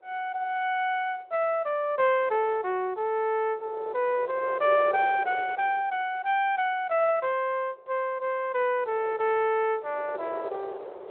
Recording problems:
phone line; 320 Hz to 3.5 kHz, Speex
wind on the microphone; below 680 Hz, SNR 13 dB

